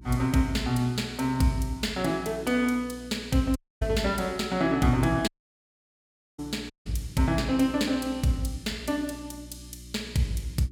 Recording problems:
hum; 60 Hz, harmonics up to 360 Hz, SNR 20 dB
audio cutting out; at 3.5 s, at 5.5 s for 1 s and at 6.5 s

